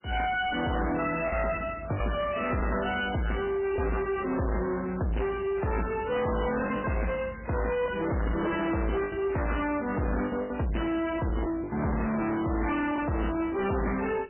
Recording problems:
lossy compression; MP3, log-spectral distance 6 dB, nothing above 2.7 kHz
distortion; soft clipping, signal-to-distortion ratio 6 dB
packet loss; 5% of the sound replaced, filled with the last packet

